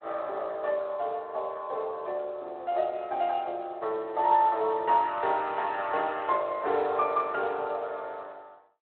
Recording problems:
phone line; 370 Hz to 3.8 kHz, Speex

